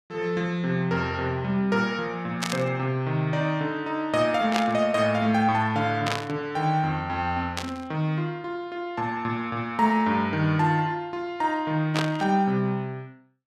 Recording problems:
burst of static; 5 times, first at 2.5 s; peak +2 dB vs average level

